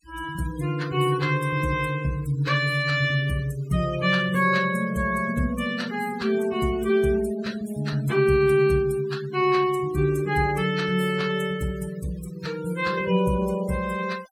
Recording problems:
denoising artefacts; signal-to-artefact ratio 20 dB

